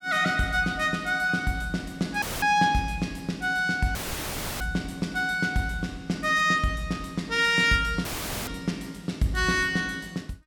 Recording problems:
dropout; at 2 s, at 4 s for 0.5 s and at 8 s; filled with static

